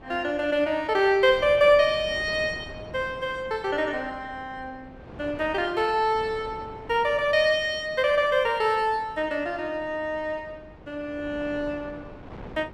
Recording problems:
wind on the microphone; below 640 Hz, SNR 20 dB

